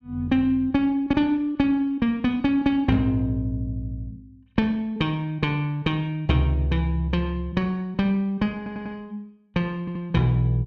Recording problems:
stutter; at 8.5 s and at 10 s

